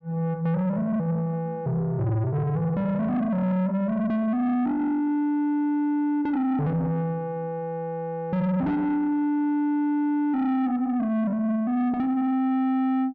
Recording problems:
distorted audio; soft clipping, signal-to-distortion ratio 11 dB

